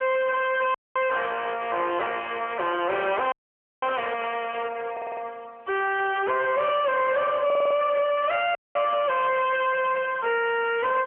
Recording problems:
telephone audio; 370 Hz to 3.2 kHz, AMR-NB
distorted audio; soft clipping, signal-to-distortion ratio 6 dB
dropout; at 0.5 s, at 3.5 s for 0.5 s and at 8.5 s
burst of static; at 4 s, at 6 s and at 8 s; peak -10 dB vs average level
stutter; at 5 s and at 7.5 s

